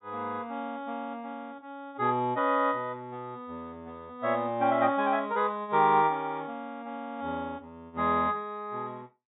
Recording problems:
treble missing; nothing above 4 kHz

